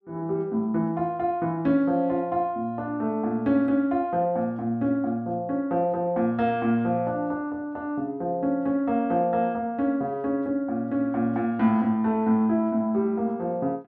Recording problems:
none

